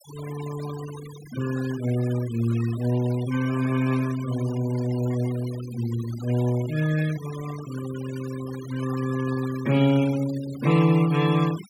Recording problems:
noise reduction artefacts; signal-to-artefact ratio 16 dB

